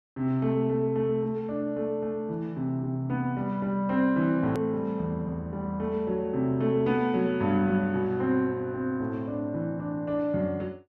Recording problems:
click at an edit; at 4.5 s

